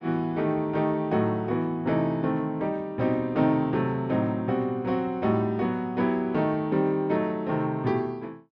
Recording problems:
none

